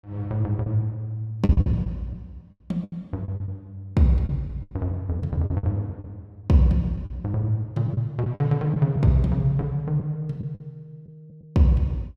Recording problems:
packet loss; 9% of the sound replaced, filled with the last packet

